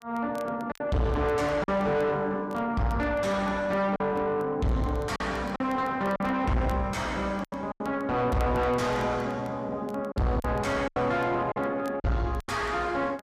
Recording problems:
distortion; soft clipping, signal-to-distortion ratio 7 dB
crackle; vinyl, SNR 29 dB
packet loss; 6% of the sound replaced, filled with silence

